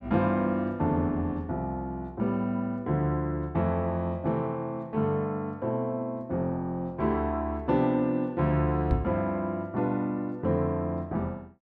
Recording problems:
microphone thump; at 9 s; peak +4 dB vs average level

